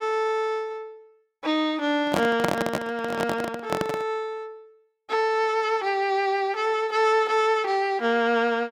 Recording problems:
handling noise; from 2 to 4 s; peak +4 dB vs average level

